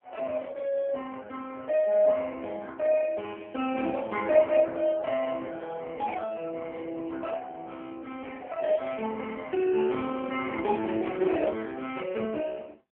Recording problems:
phone line; 220 Hz to 3.1 kHz, AMR-NB

